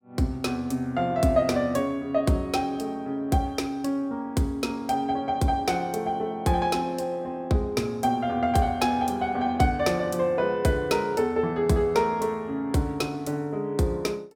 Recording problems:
none

